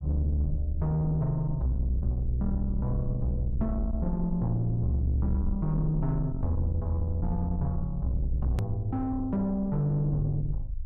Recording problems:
distorted audio; soft clipping, signal-to-distortion ratio 9 dB
rumble; below 66 Hz, SNR 7 dB
edit click; at 8.5 s

